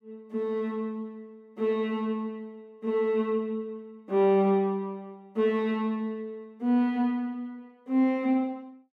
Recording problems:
none

